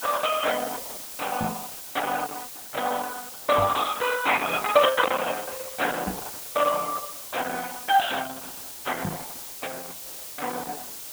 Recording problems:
lossy compression; Opus, log-spectral distance 6 dB
background hiss; slope 0 dB per octave, SNR 10 dB
microphone bump; 4 times, first at 1.5 s; peak 0 dB vs average level

